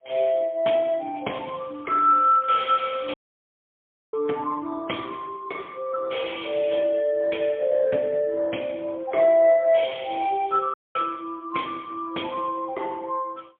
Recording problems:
phone line; 260 Hz to 3.4 kHz, AMR-NB, then MP3
crackling; from 1 to 3 s; loose cable, SNR 29 dB
dropout; at 3 s for 1 s and at 11 s

